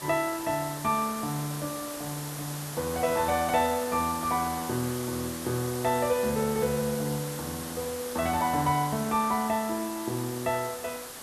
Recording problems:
background hiss; slope -2 dB per octave, SNR 8 dB

